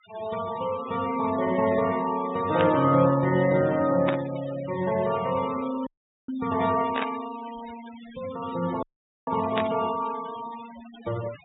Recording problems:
treble missing; nothing above 4 kHz
denoising artefacts; signal-to-artefact ratio 16 dB
burst of static; 4 times, first at 2.5 s; peak 0 dB vs average level
dropout; at 6 s and at 9 s

